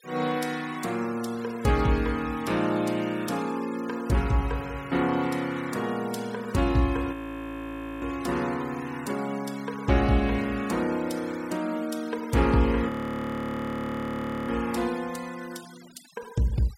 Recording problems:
denoising artefacts; signal-to-artefact ratio 19 dB
frozen audio; at 7 s for 1 s and at 13 s for 1.5 s

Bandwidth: 16 kHz